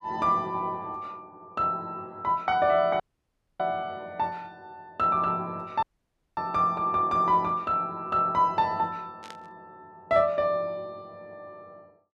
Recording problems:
dropout; at 3 s for 0.5 s and at 6 s for 0.5 s
burst of static; at 9 s; peak -13 dB vs average level

